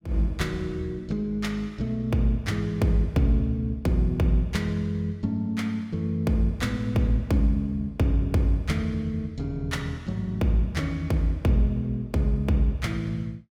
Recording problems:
none

